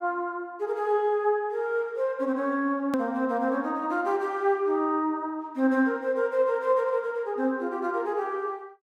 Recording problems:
edit click; at 3 s

